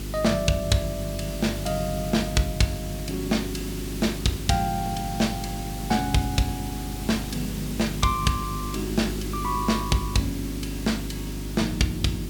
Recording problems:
electrical hum; 50 Hz, harmonics up to 400 Hz, SNR 7 dB
hiss; SNR 11 dB

